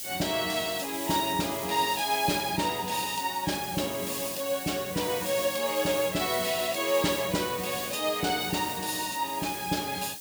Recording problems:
hiss; SNR 8 dB

